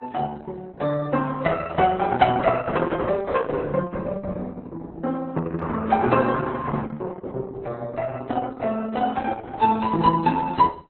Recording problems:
lossy codec; Opus, then AAC, log-spectral distance 4 dB, nothing above 4 kHz

